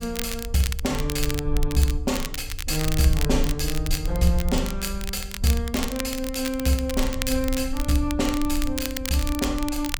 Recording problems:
rumble; below 56 Hz, SNR 7 dB
crackling; vinyl, SNR 8 dB

